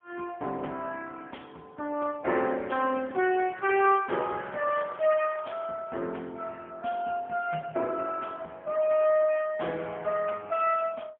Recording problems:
phone line; 280 Hz to 3.1 kHz, AMR-NB, then MP3
crackle; from 3 to 5.5 s; loose cable, SNR 28 dB

